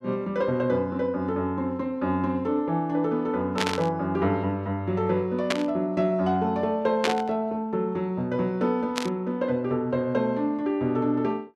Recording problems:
static burst; 4 times, first at 3.5 s; peak +5 dB vs average level

